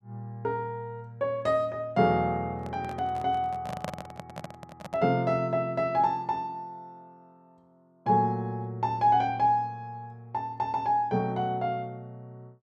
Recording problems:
microphone handling noise; from 2.5 to 5 s; peak -2 dB vs average level

